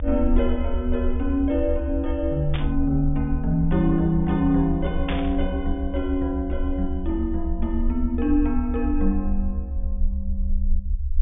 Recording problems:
treble cut off; nothing above 3.6 kHz
low-frequency rumble; below 70 Hz, strongest tone 22 Hz, SNR 4 dB
static burst; at 2.5 s and at 5 s; peak -2 dB vs average level

